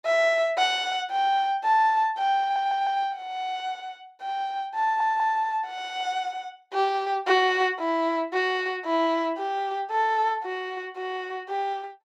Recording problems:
stutter; at 2.5 s and at 5 s

